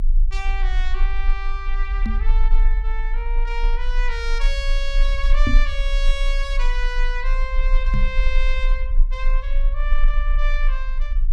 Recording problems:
rumble; below 34 Hz, strongest tone 26 Hz, SNR -7 dB
knock on the microphone; at 2 s, at 5.5 s and at 8 s; peak +9 dB vs average level

